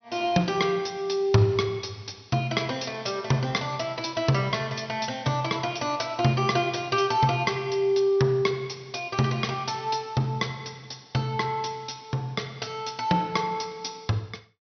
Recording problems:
treble missing; nothing above 6.1 kHz

